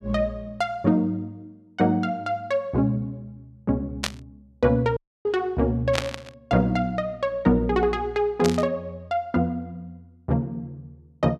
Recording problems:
static burst; at 4 s, at 6 s and at 8.5 s; peak +3 dB vs average level
audio cutting out; at 5 s

